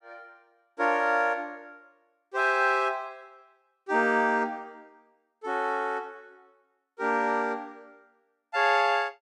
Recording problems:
none

